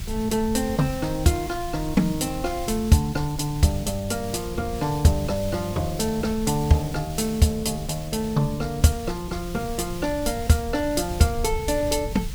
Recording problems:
hiss; slope +1 dB per octave, SNR 16 dB
low-frequency rumble; below 100 Hz, SNR 12 dB

